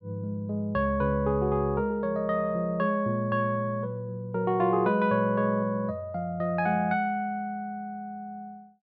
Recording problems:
none

